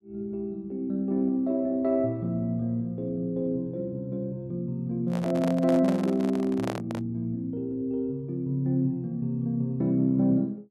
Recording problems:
handling noise; from 5 to 7 s; peak -2 dB vs average level

